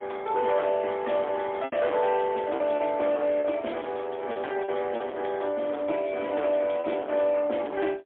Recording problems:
telephone audio; 260 Hz to 3.4 kHz, AMR-NB, then MP3
distortion; hard clipping, signal-to-distortion ratio 12 dB
packet loss; 4% of the sound replaced, filled with repeated pitch periods

